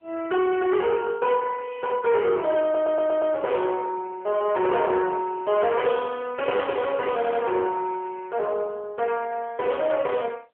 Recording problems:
phone line; 390 Hz to 3 kHz, AMR-NB
distorted audio; soft clipping, signal-to-distortion ratio 12 dB
audio stuttering; at 2.5 s and at 7 s

